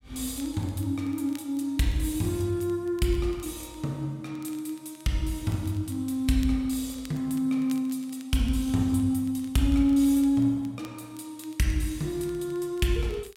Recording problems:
crackle; vinyl, SNR 27 dB

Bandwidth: 16 kHz